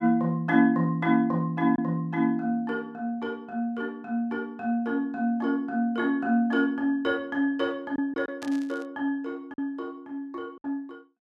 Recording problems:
packet loss; 1.6% of the sound replaced, filled with silence
static burst; at 8.5 s; peak -11 dB vs average level

